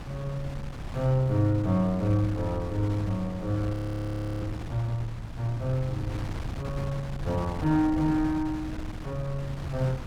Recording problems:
wind on the microphone; below 220 Hz, SNR 9 dB
audio freezing; at 3.5 s for 0.5 s

